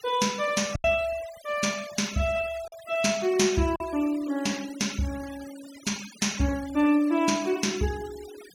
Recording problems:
denoising artefacts; signal-to-artefact ratio 17 dB
packet loss; 2% of the sound replaced, filled with silence

